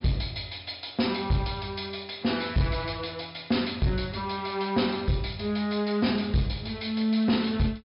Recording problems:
treble missing; nothing above 5.5 kHz
distorted audio; soft clipping, signal-to-distortion ratio 11 dB

